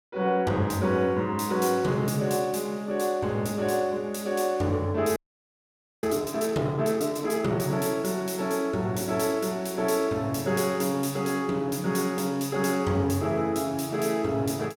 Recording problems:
audio freezing; at 5 s for 1 s

